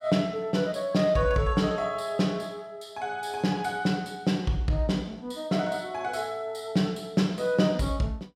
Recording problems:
none

